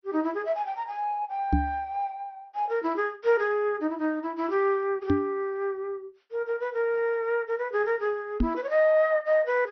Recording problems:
codec artefacts; MP2, log-spectral distance 2 dB
microphone thump; at 1.5 s, at 5 s and at 8.5 s; peak +6 dB vs average level

